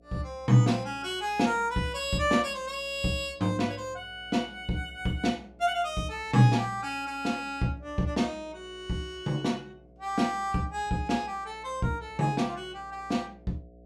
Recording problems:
hum; 60 Hz, harmonics up to 720 Hz, SNR 25 dB

